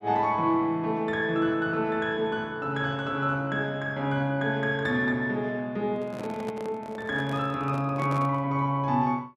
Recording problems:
microphone handling noise; from 6 to 8.5 s; peak -7 dB vs average level

